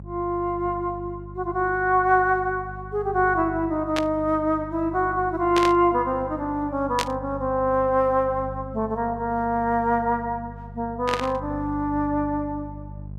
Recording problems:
mains hum; 50 Hz, harmonics up to 400 Hz, SNR 15 dB
burst of static; 4 times, first at 4 s; peak +1 dB vs average level

